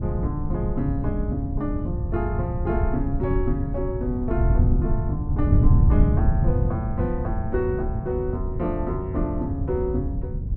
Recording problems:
wind on the microphone; below 120 Hz, SNR -3 dB

